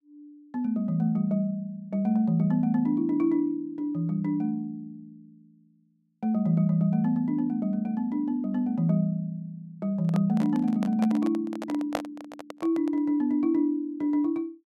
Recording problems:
handling noise; from 10 to 13 s; peak +2 dB vs average level

